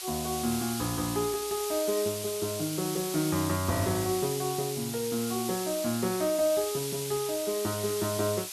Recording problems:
hiss; SNR 5 dB

